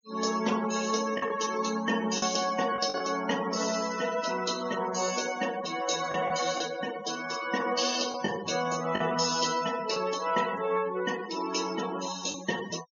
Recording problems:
low-pass filter; nothing above 7 kHz
noise reduction artefacts; signal-to-artefact ratio 12 dB
packet loss; 3% of the sound replaced, filled with the last packet

